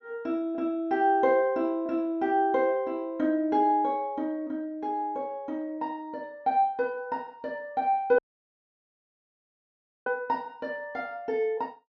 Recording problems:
treble cut off; nothing above 8 kHz
dropout; at 8 s for 2 s

